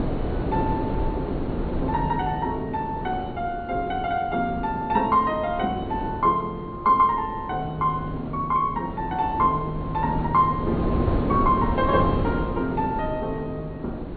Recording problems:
treble cut off; nothing above 4.4 kHz
wind noise; below 400 Hz, SNR 5 dB

